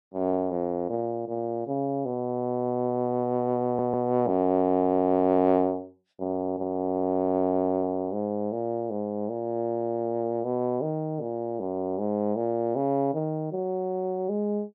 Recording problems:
audio stuttering; at 3.5 s

